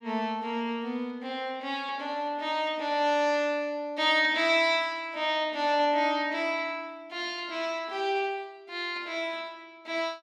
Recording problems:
none

